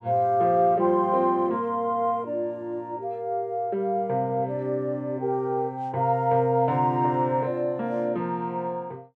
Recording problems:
none

